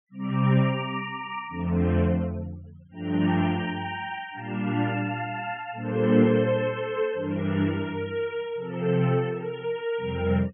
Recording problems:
treble missing; nothing above 3.4 kHz
denoising artefacts; signal-to-artefact ratio 26 dB

